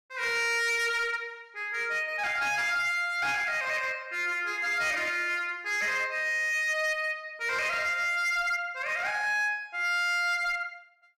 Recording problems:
distortion; hard clipping, signal-to-distortion ratio 12 dB

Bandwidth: 15 kHz